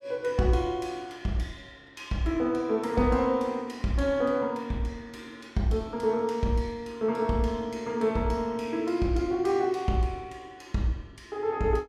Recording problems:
none

